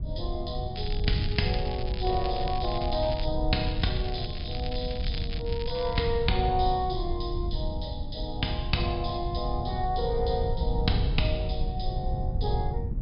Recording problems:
treble cut off; nothing above 5.5 kHz
wind on the microphone; below 98 Hz, SNR 2 dB
crackling; from 1 to 3.5 s and from 3.5 to 6 s; loose cable, SNR 11 dB

